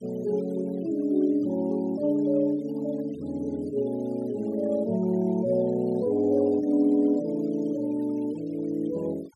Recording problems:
noise reduction artefacts; signal-to-artefact ratio 26 dB

